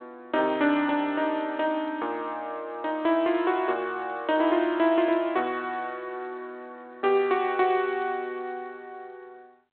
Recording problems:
telephone audio; 260 Hz to 3.6 kHz, G.726

